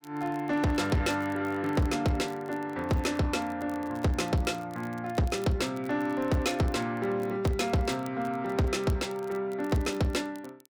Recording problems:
distorted audio; soft clipping, signal-to-distortion ratio 11 dB
crackling; vinyl, SNR 26 dB

